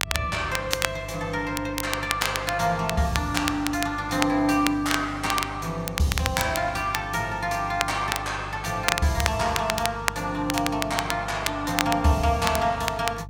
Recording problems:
electrical hum; 50 Hz, harmonics up to 350 Hz, SNR 14 dB
crackle; vinyl, SNR 5 dB

